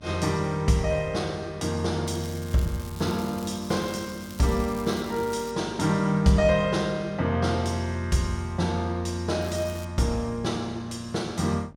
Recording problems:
electrical hum; 50 Hz, harmonics up to 950 Hz, SNR 23 dB
crackling; from 2 to 5.5 s and at 9.5 s; loose cable, SNR 19 dB

